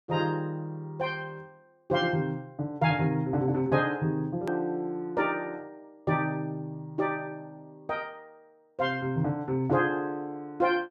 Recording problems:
click at an edit; at 4.5 s

